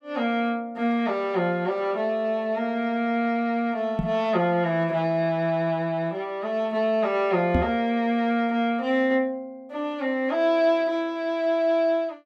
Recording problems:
microphone thump; at 4 s and at 7.5 s; peak +4 dB vs average level

